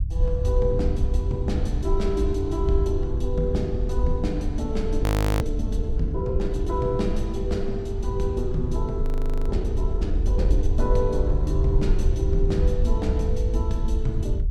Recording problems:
rumble; below 70 Hz, SNR -2 dB
frozen audio; at 5 s and at 9 s

